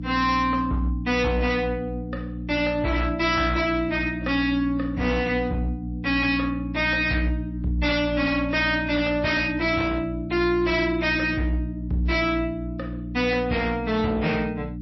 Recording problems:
lossy codec; MP3, log-spectral distance 2 dB, nothing above 5.7 kHz
distorted audio; hard clipping, signal-to-distortion ratio 7 dB
hum; 60 Hz, harmonics up to 300 Hz, SNR 8 dB

